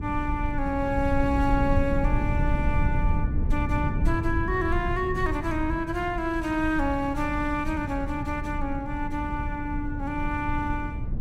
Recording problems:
rumble; below 110 Hz, SNR 2 dB

